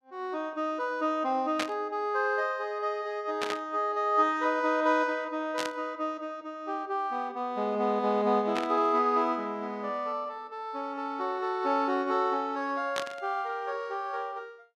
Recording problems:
burst of static; 5 times, first at 1.5 s; peak +3 dB vs average level

